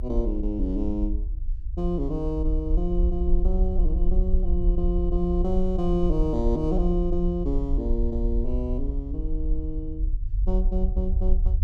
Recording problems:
low-frequency rumble; below 50 Hz, SNR -1 dB

